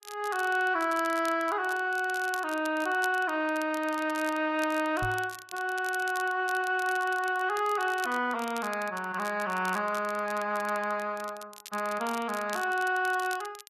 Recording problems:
codec artefacts; Vorbis, log-spectral distance 2 dB
crackle; vinyl, SNR 17 dB
microphone thump; at 5 s; peak -4 dB vs average level

